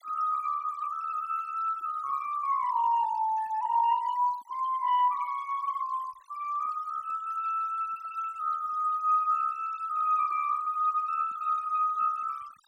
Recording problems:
noise reduction artefacts; signal-to-artefact ratio 22 dB

